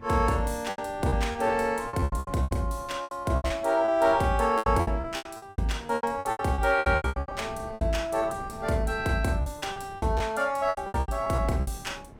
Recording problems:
wind noise; below 340 Hz, SNR 18 dB
packet loss; 19% of the sound replaced, filled with repeated pitch periods

